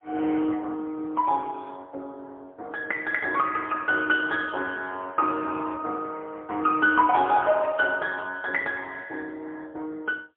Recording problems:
phone line; 260 Hz to 2.5 kHz, AMR-NB, then MP3

